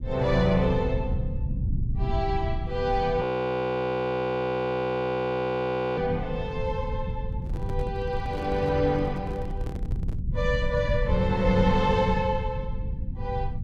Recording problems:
rumble; below 130 Hz, SNR 5 dB
frozen audio; at 3 s for 2.5 s
microphone handling noise; from 7.5 to 10 s; peak -10 dB vs average level

